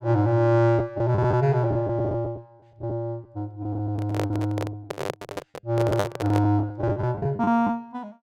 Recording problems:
lost packets; 11% of the sound replaced, filled with the last packet
handling noise; from 4 to 6.5 s; peak +2 dB vs average level

